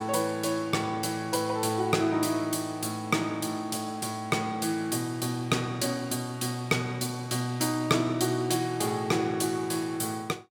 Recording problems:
none

